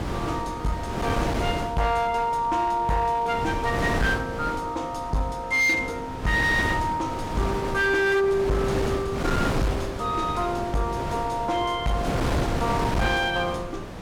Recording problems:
distorted audio; hard clipping, uneven, signal-to-distortion ratio 11 dB
wind on the microphone; below 790 Hz, SNR 5 dB

